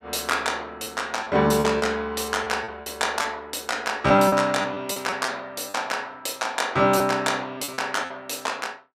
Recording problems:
packet loss; 8% of the sound replaced, filled with repeated pitch periods

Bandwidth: 15.5 kHz